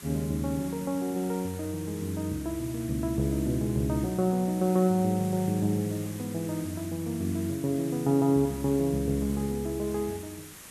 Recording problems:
hiss; slope -1 dB per octave, SNR 16 dB

